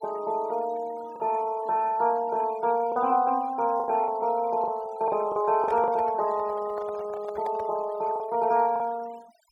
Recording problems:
noise reduction artefacts; signal-to-artefact ratio 23 dB
packet loss; 5% of the sound replaced, filled with the last packet
microphone handling noise; from 5.5 to 8.5 s; peak -7 dB vs average level

